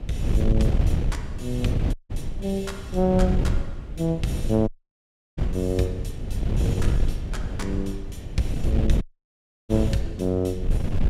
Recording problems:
wind noise; below 110 Hz, SNR 1 dB
dropout; at 2 s, at 4.5 s for 0.5 s and at 9 s for 0.5 s

